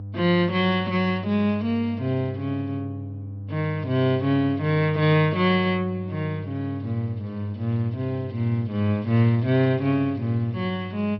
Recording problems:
treble missing; nothing above 5.5 kHz
hum; 50 Hz, harmonics up to 500 Hz, SNR 11 dB

